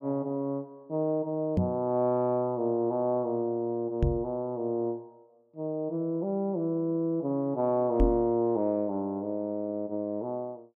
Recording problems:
microphone thump; at 1.5 s, at 4 s and at 8 s; peak +7 dB vs average level

